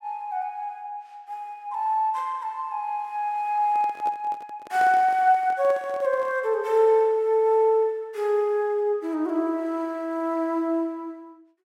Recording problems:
microphone handling noise; from 3.5 to 6.5 s; peak -10 dB vs average level

